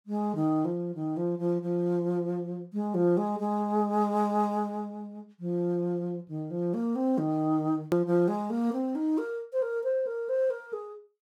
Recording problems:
hard cut with a click; at 8 s

